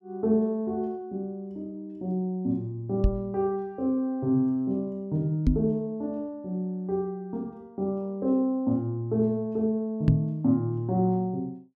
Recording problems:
microphone bump; at 3 s, at 5.5 s and at 10 s; peak +10 dB vs average level

